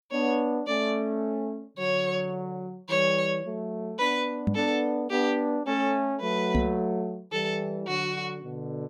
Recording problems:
microphone bump; at 4.5 s and at 6.5 s; peak +6 dB vs average level

